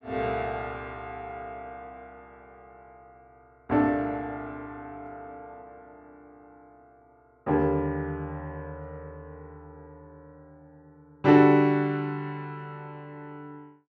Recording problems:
none

